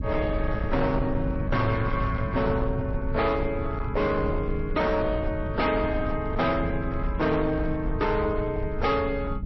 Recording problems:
lossy codec; MP3, then MP3, log-spectral distance 2 dB, nothing above 5.7 kHz
distorted audio; hard clipping, signal-to-distortion ratio 10 dB
rumble; below 140 Hz, SNR 5 dB

